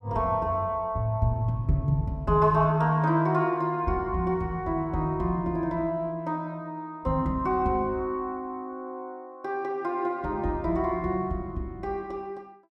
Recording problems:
none

